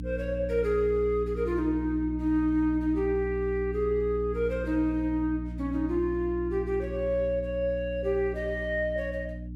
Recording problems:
hum; 60 Hz, harmonics up to 300 Hz, SNR 8 dB

